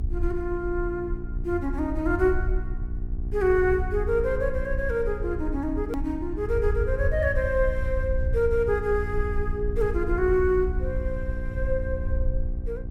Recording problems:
hum; 60 Hz, harmonics up to 780 Hz, SNR 13 dB
rumble; below 72 Hz, SNR 5 dB
hard cut with a click; at 6 s

